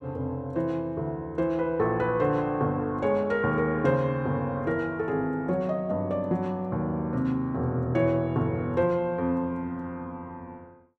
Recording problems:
none

